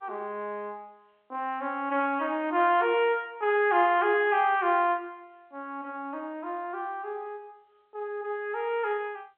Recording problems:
telephone audio; 220 Hz to 3.5 kHz, G.711

